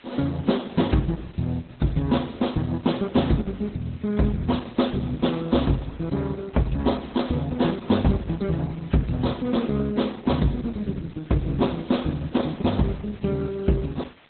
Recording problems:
lossy compression; Vorbis, then Opus, log-spectral distance 10 dB, nothing above 4 kHz
hiss; SNR 27 dB

